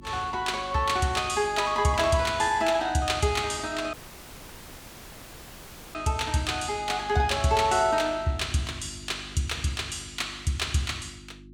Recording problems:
hum; 50 Hz, harmonics up to 350 Hz, SNR 21 dB
audio cutting out; at 4 s for 2 s

